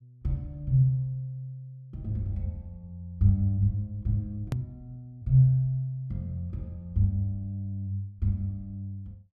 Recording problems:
hard cut with a click; at 4.5 s

